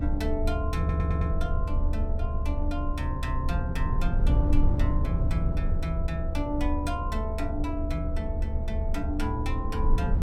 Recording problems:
electrical hum; 60 Hz, harmonics up to 540 Hz, SNR 14 dB
low-frequency rumble; below 74 Hz, strongest tone 24 Hz, SNR -4 dB
audio stuttering; at 1 s

